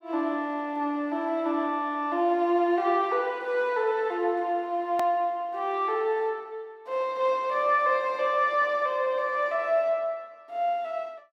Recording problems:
edit click; at 5 s

